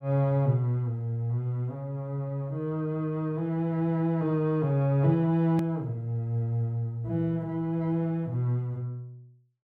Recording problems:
hard cut with a click; at 5.5 s

